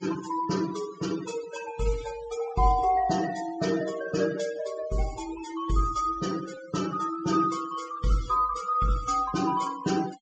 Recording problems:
treble cut off; nothing above 8 kHz
noise reduction artefacts; signal-to-artefact ratio 14 dB

